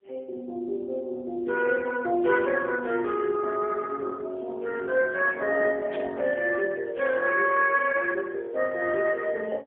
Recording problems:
telephone audio; 280 Hz to 2.9 kHz, AMR-NB, then MP3
static burst; at 6 s; peak -12 dB vs average level

